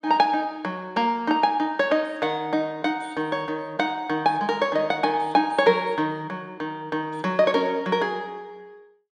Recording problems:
none

